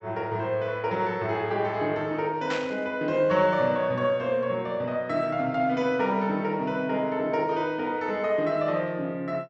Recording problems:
treble cut off; nothing above 7.8 kHz
burst of static; at 2.5 s; peak -3 dB vs average level

